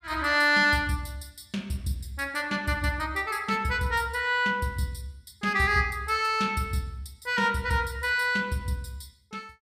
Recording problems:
none

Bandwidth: 15 kHz